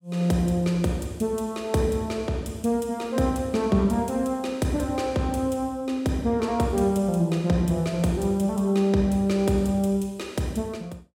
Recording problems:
none

